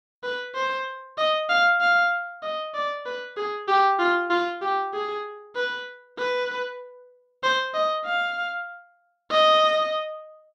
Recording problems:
none

